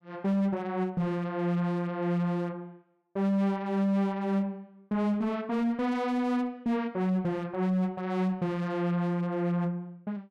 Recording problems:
distortion; hard clipping, uneven, signal-to-distortion ratio 10 dB

